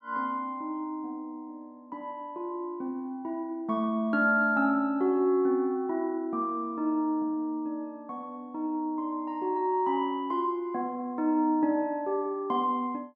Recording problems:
none

